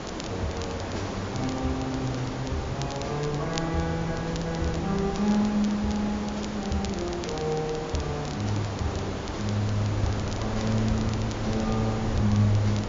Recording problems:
low-pass filter; nothing above 7.2 kHz
hum; 60 Hz, harmonics up to 780 Hz, SNR 23 dB
background hiss; slope -6 dB per octave, SNR 5 dB
wind noise; below 140 Hz, SNR 13 dB
crackling; vinyl, SNR 16 dB

